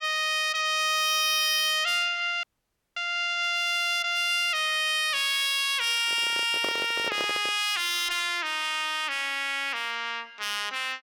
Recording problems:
distortion; hard clipping, signal-to-distortion ratio 11 dB
frozen audio; at 2.5 s for 0.5 s
handling noise; from 6 to 7.5 s; peak -5 dB vs average level

